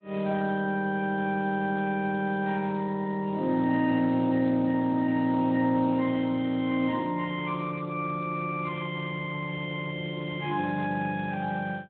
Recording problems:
telephone audio; 220 Hz to 3.7 kHz, Speex

